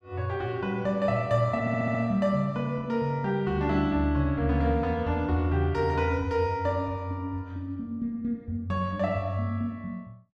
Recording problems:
audio stuttering; at 1.5 s

